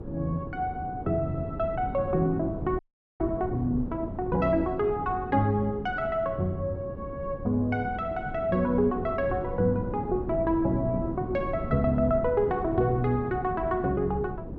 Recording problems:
wind noise; below 300 Hz, SNR 9 dB
frozen audio; at 3 s

